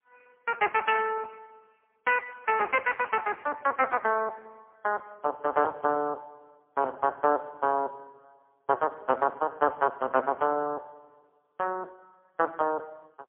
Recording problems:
telephone audio; 260 Hz to 3 kHz, AMR-NB, then MP3

